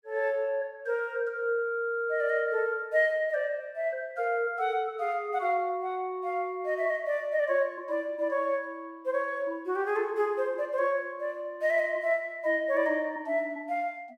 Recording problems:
none

